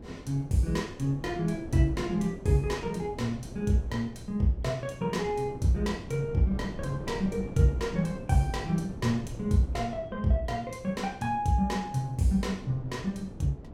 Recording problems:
wind noise; below 330 Hz, SNR 14 dB

